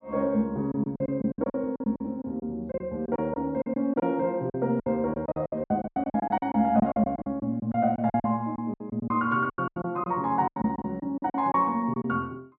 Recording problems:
packet loss; 17% of the sound replaced, filled with silence

